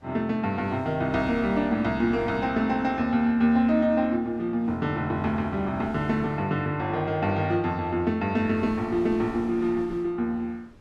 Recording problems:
wind noise; below 580 Hz, SNR 22 dB

